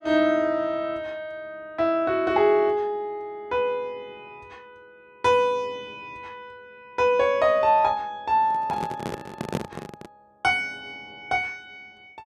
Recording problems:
handling noise; from 8.5 to 10 s; peak 0 dB vs average level

